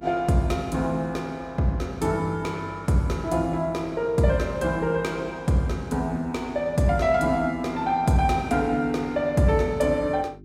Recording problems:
electrical hum; 50 Hz, harmonics up to 400 Hz, SNR 23 dB

